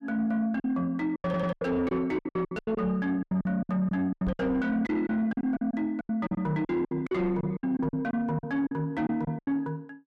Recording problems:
distorted audio; soft clipping, signal-to-distortion ratio 11 dB
lost packets; 17% of the sound replaced, filled with silence
stutter; at 1.5 s
microphone thump; at 4.5 s; peak -1 dB vs average level

